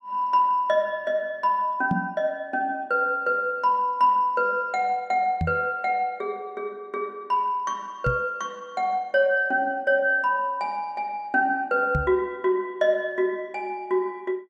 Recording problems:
microphone bump; 4 times, first at 2 s; peak +3 dB vs average level

